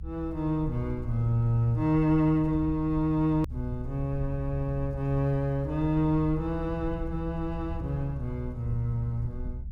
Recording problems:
low-frequency rumble; below 70 Hz, SNR 10 dB
click at an edit; at 3.5 s

